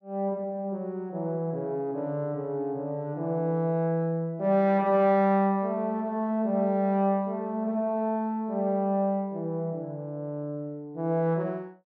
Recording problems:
none

